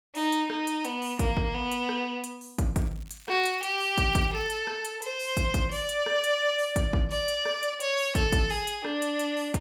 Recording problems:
crackling; from 3 to 4.5 s; loose cable, SNR 26 dB

